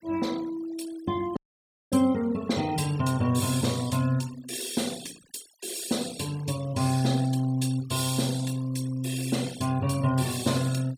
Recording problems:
noise reduction artefacts; signal-to-artefact ratio 17 dB
dropout; at 1.5 s for 0.5 s

